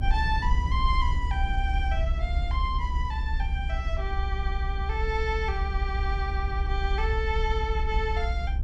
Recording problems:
low-frequency rumble; below 66 Hz, SNR -2 dB

